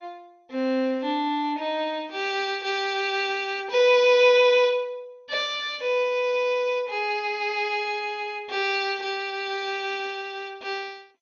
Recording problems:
lossy codec; MP2, log-spectral distance 2 dB, nothing above 6 kHz

